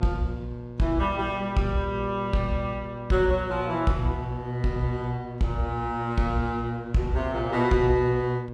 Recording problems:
hum; 60 Hz, harmonics up to 1.1 kHz, SNR 11 dB

